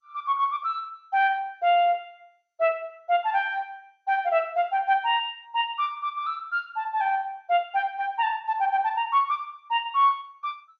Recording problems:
lossy compression; MP2, log-spectral distance 2 dB

